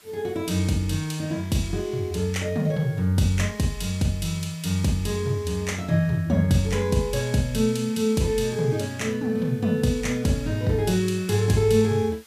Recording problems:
hiss; slope 0 dB per octave, SNR 28 dB

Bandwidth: 15 kHz